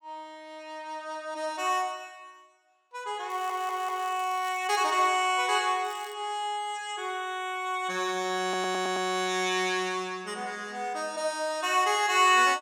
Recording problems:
crackle; from 3.5 to 5 s and at 6 s; loose cable, SNR 23 dB
stutter; at 3.5 s and at 8.5 s

